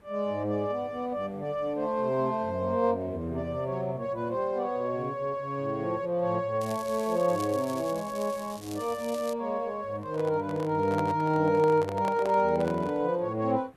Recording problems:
background hiss; SNR 29 dB
crackle; from 6.5 to 9.5 s; loose cable, SNR 17 dB
microphone handling noise; from 10 to 13 s; peak -3 dB vs average level

